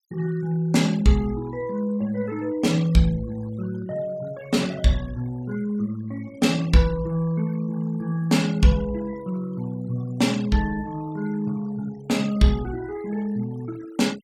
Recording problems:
noise reduction artefacts; signal-to-artefact ratio 22 dB

